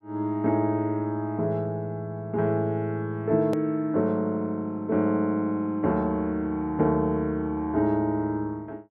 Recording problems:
hard cut with a click; at 3.5 s

